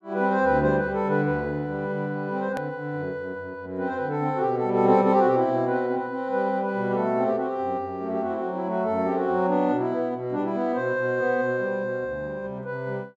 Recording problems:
hard cut with a click; at 2.5 s

